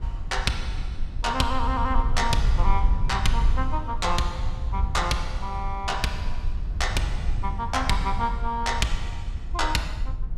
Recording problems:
low-frequency rumble; below 58 Hz, SNR 2 dB

